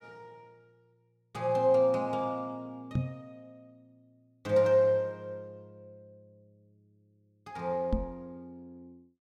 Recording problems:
knock on the microphone; at 3 s and at 8 s; peak +2 dB vs average level

